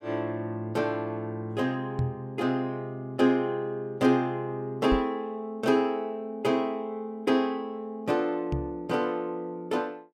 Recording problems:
microphone thump; at 2 s, at 5 s and at 8.5 s; peak +3 dB vs average level

